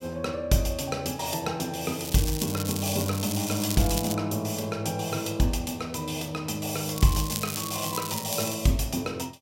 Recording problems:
crackle; from 2 to 4 s and from 7 to 8.5 s; loose cable, SNR 6 dB

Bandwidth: 16 kHz